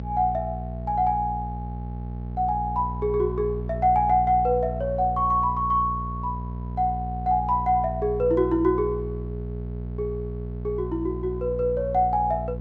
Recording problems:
hum; 60 Hz, harmonics up to 660 Hz, SNR 8 dB

